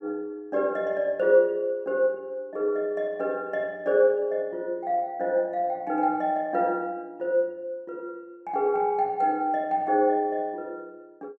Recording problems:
none

